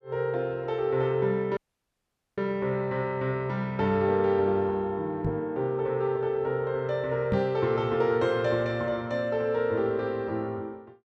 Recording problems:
dropout; at 1.5 s for 1 s
knock on the microphone; at 5.5 s and at 7.5 s; peak +3 dB vs average level

